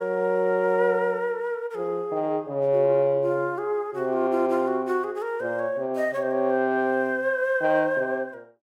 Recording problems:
none

